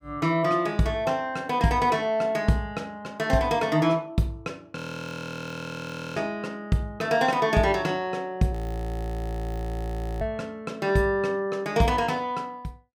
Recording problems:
frozen audio; at 5 s for 1.5 s and at 8.5 s for 1.5 s

